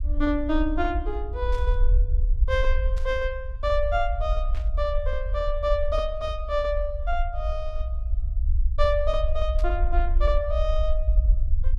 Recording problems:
low-frequency rumble; below 56 Hz, SNR 0 dB
static burst; 4 times, first at 1.5 s; peak -13 dB vs average level

